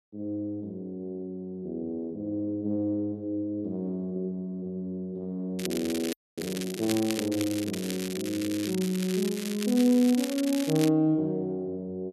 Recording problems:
crackle; from 5.5 to 11 s; loose cable, SNR 8 dB
audio freezing; at 6 s

